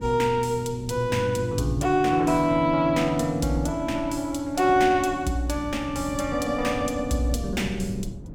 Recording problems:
wind noise; below 210 Hz, SNR 15 dB

